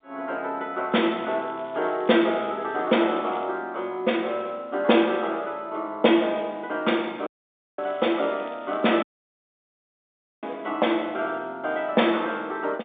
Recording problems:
phone line; 260 Hz to 3.6 kHz, G.711
crackle; from 1 to 3.5 s and from 8 to 9 s; loose cable, SNR 26 dB
audio cutting out; at 7.5 s for 0.5 s and at 9 s for 1.5 s

